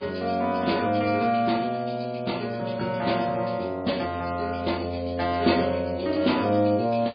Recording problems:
codec artefacts; MP3, log-spectral distance 5 dB, nothing above 4.6 kHz

